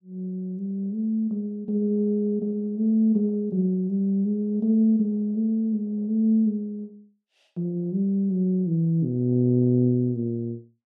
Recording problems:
none

